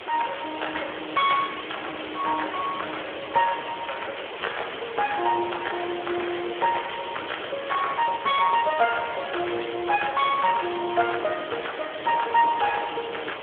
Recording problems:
telephone audio; 300 Hz to 3.4 kHz, Speex
background hiss; SNR 9 dB

